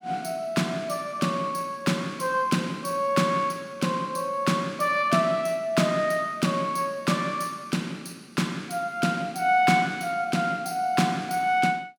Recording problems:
none

